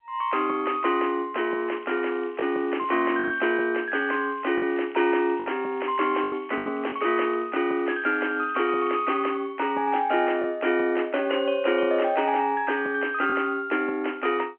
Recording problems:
phone line; 280 Hz to 3.1 kHz, G.711
packet loss; 3% of the sound replaced, filled with the last packet
crackle; from 1.5 to 3.5 s and from 4 to 9 s; loose cable, SNR 27 dB

